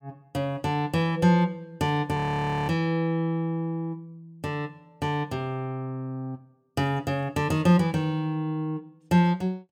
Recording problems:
audio freezing; at 2 s for 0.5 s

